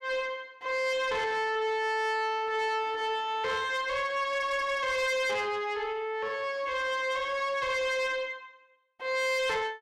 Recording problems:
distortion; soft clipping, signal-to-distortion ratio 10 dB

